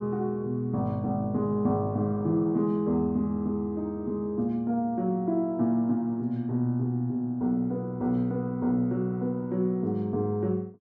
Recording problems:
none

